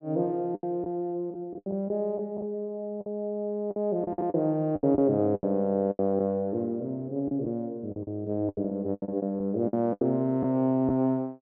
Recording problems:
lost packets; 11% of the sound replaced, filled with the last packet

